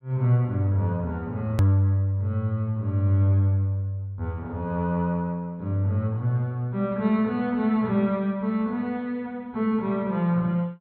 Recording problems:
low-pass filter; nothing above 4.3 kHz
edit click; at 1.5 s

